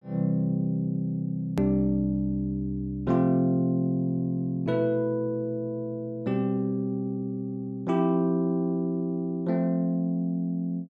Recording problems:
hard cut with a click; at 1.5 s

